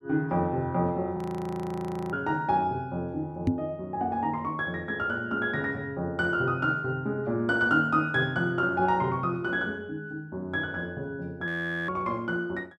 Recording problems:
frozen audio; at 1 s for 1 s and at 11 s
knock on the microphone; at 3.5 s; peak +7 dB vs average level

